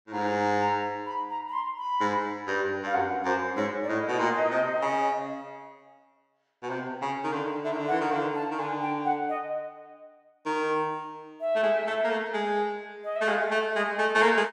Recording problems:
none

